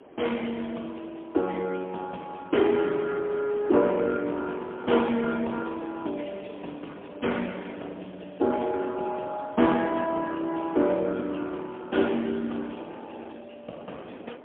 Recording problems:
phone line; 190 Hz to 3.4 kHz, AMR-NB, then MP3
wind on the microphone; below 710 Hz, SNR 19 dB

